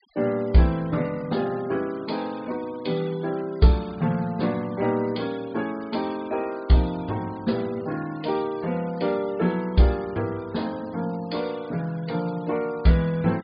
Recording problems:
low-pass filter; nothing above 4.8 kHz
noise reduction artefacts; signal-to-artefact ratio 23 dB

